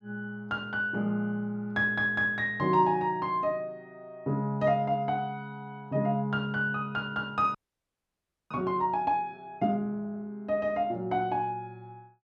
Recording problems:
audio freezing; at 7.5 s for 1 s

